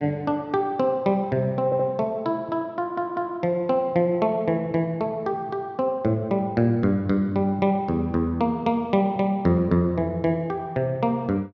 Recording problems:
audio stuttering; at 1.5 s and at 3 s

